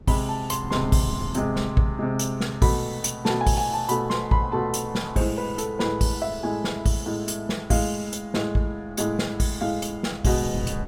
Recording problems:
wind noise; below 190 Hz, SNR 16 dB

